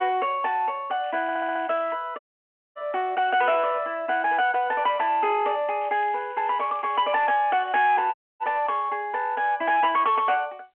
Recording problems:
phone line; 280 Hz to 3.3 kHz, G.711
distorted audio; soft clipping, signal-to-distortion ratio 11 dB
crackle; at 1 s, from 6 to 7.5 s and at 7.5 s; loose cable, SNR 27 dB
audio stuttering; at 1 s
audio cutting out; at 2 s for 0.5 s and at 8 s

